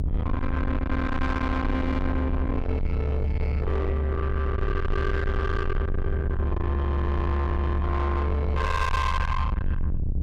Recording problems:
distortion; soft clipping, signal-to-distortion ratio 7 dB
low-frequency rumble; below 200 Hz, strongest tone 72 Hz, SNR -1 dB

